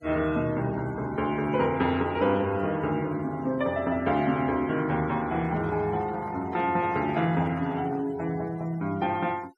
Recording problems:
denoising artefacts; signal-to-artefact ratio 23 dB
microphone handling noise; from 5.5 to 8 s; peak -10 dB vs average level

